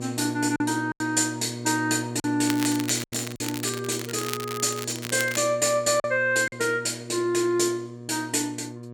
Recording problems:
electrical hum; 60 Hz, harmonics up to 1.2 kHz, SNR 12 dB
lost packets; 4% of the sound replaced, filled with silence
crackling; from 2.5 to 5.5 s; loose cable, SNR 9 dB

